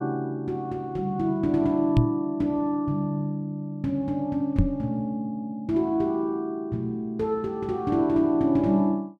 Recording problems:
microphone thump; at 2 s and at 4.5 s; peak +9 dB vs average level

